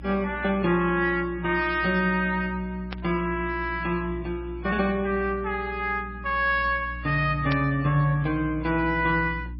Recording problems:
lossy compression; MP3, log-spectral distance 2 dB, nothing above 4.6 kHz
hum; 60 Hz, harmonics up to 300 Hz, SNR 14 dB
static burst; at 3 s and at 7.5 s; peak -5 dB vs average level

